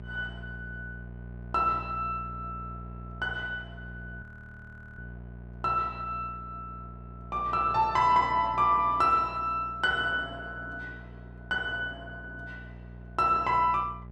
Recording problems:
hum; 60 Hz, harmonics up to 840 Hz, SNR 16 dB
audio freezing; at 4 s for 1 s

